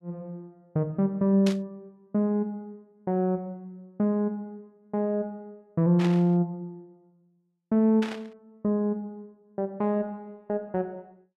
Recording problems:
static burst; at 1.5 s, at 6 s and at 8 s; peak -3 dB vs average level

